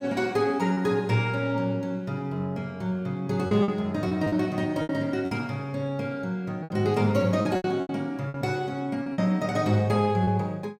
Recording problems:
packet loss; 7% of the sound replaced, filled with repeated pitch periods

